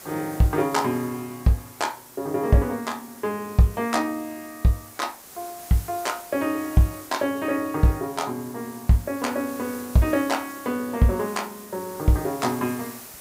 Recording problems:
background hiss; slope -2 dB per octave, SNR 17 dB

